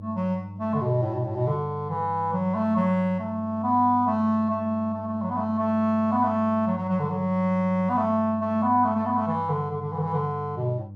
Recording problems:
hum; 50 Hz, harmonics up to 600 Hz, SNR 14 dB

